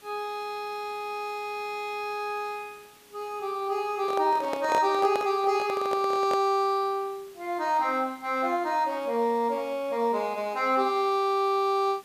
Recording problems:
hiss; slope -1 dB per octave, SNR 26 dB
handling noise; from 4 to 6.5 s; peak +1 dB vs average level

